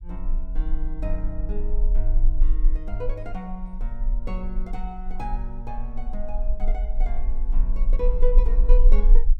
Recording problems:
low-frequency rumble; below 34 Hz, strongest tone 24 Hz, SNR -9 dB

